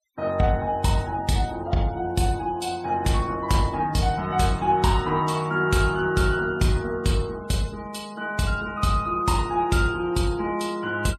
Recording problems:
noise reduction artefacts; signal-to-artefact ratio 22 dB

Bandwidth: 14.5 kHz